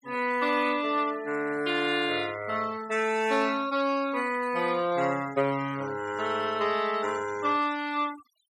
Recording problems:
noise reduction artefacts; signal-to-artefact ratio 19 dB

